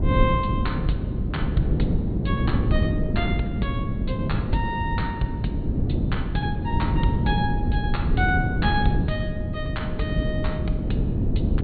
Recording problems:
treble cut off; nothing above 4.5 kHz
low-frequency rumble; below 84 Hz, SNR 8 dB
wind noise; below 220 Hz, SNR -4 dB

